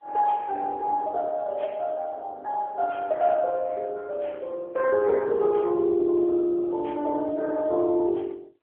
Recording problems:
telephone audio; 370 Hz to 2.1 kHz, AMR-NB

